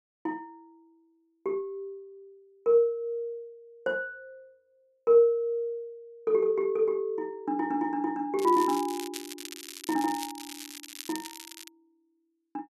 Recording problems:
crackle; from 8.5 to 12 s; loose cable, SNR 13 dB

